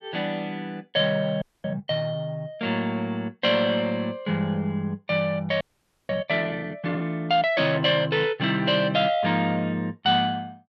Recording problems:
frozen audio; at 1.5 s and at 5.5 s

